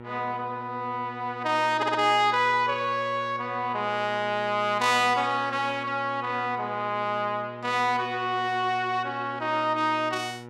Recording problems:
electrical hum; 60 Hz, harmonics up to 1.9 kHz, SNR 16 dB
stutter; at 2 s

